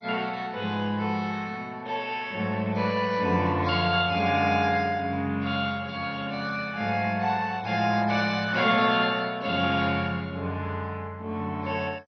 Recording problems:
codec artefacts; MP2, log-spectral distance 3 dB, nothing above 5.5 kHz

